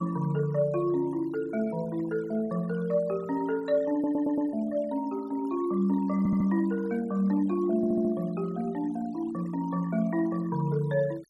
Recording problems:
denoising artefacts; signal-to-artefact ratio 22 dB
stutter; at 4 s, at 6 s and at 8 s

